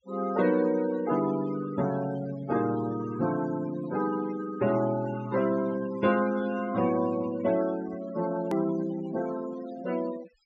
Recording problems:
low-pass filter; nothing above 8 kHz
noise reduction artefacts; signal-to-artefact ratio 14 dB
click at an edit; at 8.5 s

